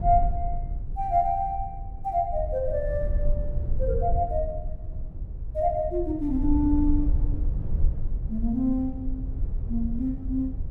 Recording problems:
low-frequency rumble; below 64 Hz, strongest tone 20 Hz, SNR 4 dB

